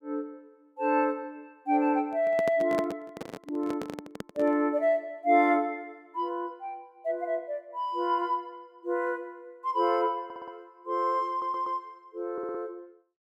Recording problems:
handling noise; from 2 to 4.5 s; peak 0 dB vs average level
stutter; at 10 s, at 11 s and at 12 s

